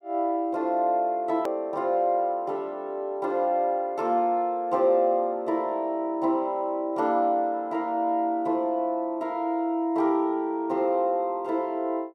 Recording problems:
hard cut with a click; at 1.5 s

